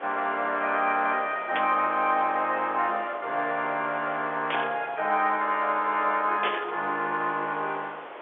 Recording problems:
phone line; 260 Hz to 3.5 kHz, G.711
hiss; SNR 14 dB
static burst; at 1.5 s, at 4.5 s and at 6.5 s; peak +1 dB vs average level

